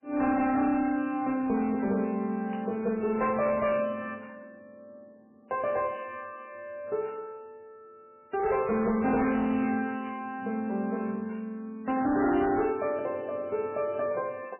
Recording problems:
lossy compression; MP3, log-spectral distance 2 dB, nothing above 2.4 kHz
distorted audio; hard clipping, signal-to-distortion ratio 12 dB
static burst; 5 times, first at 2.5 s; peak -15 dB vs average level

